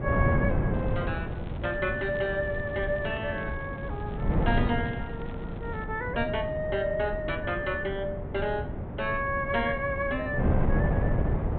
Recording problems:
treble cut off; nothing above 4 kHz
wind noise; below 250 Hz, SNR 1 dB
crackling; from 0.5 to 6 s; loose cable, SNR 24 dB

